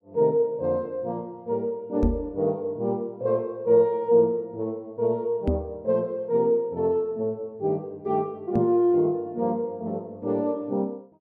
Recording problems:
microphone thump; at 2 s, at 5.5 s and at 8.5 s; peak +4 dB vs average level

